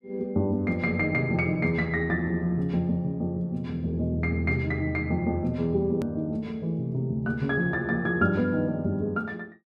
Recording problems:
click at an edit; at 6 s

